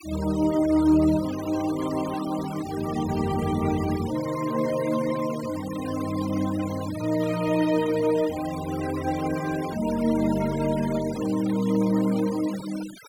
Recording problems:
noise reduction artefacts; signal-to-artefact ratio 15 dB

